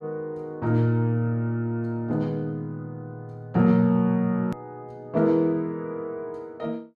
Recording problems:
edit click; at 4.5 s

